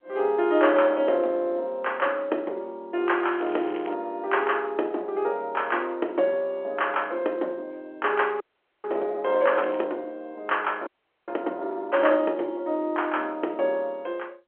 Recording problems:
phone line; 280 Hz to 3.3 kHz, G.711
crackling; at 3.5 s and at 9.5 s; loose cable, SNR 22 dB
audio freezing; at 8.5 s and at 11 s

